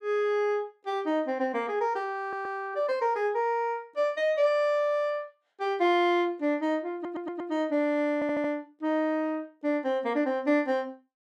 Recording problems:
audio stuttering; at 2 s, at 7 s and at 8 s

